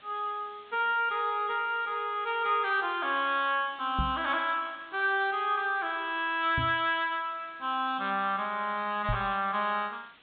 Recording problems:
treble cut off; nothing above 4 kHz
hiss; SNR 27 dB
knock on the microphone; at 4 s, at 6.5 s and at 9 s; peak +1 dB vs average level

